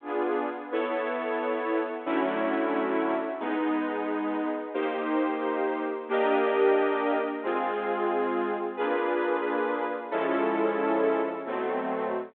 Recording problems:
phone line; 260 Hz to 3.6 kHz, G.726

